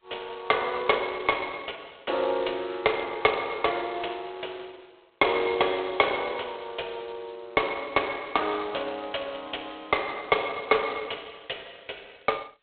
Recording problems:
phone line; 320 Hz to 3.5 kHz, G.726

